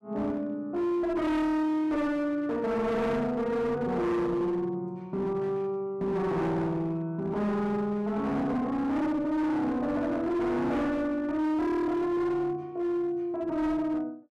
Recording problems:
distortion; hard clipping, uneven, signal-to-distortion ratio 8 dB

